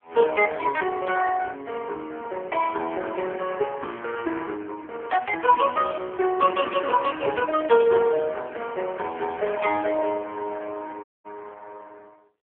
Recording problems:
phone line; 300 Hz to 2.8 kHz, AMR-NB
dropout; at 11 s

